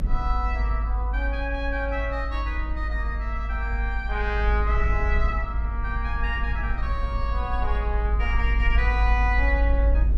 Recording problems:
rumble; below 54 Hz, strongest tone 52 Hz, SNR -3 dB

